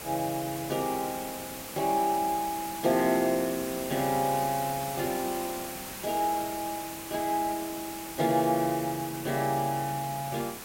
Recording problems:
background hiss; slope -2 dB per octave, SNR 8 dB

